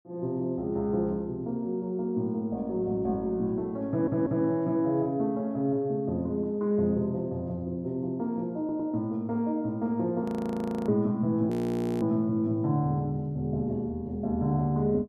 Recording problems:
audio stuttering; at 4 s and at 8.5 s
audio freezing; at 10 s for 0.5 s and at 12 s for 0.5 s

